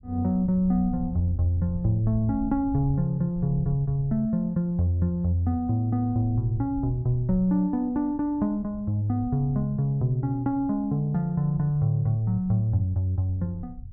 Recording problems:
low-frequency rumble; below 94 Hz, SNR 16 dB

